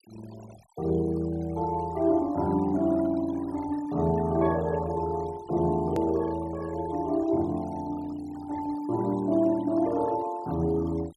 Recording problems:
denoising artefacts; signal-to-artefact ratio 20 dB
edit click; at 6 s

